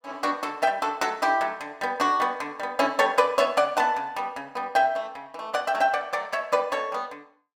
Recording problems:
none

